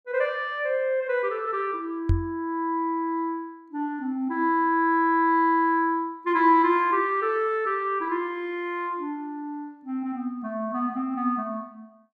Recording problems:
microphone thump; at 2 s; peak +5 dB vs average level

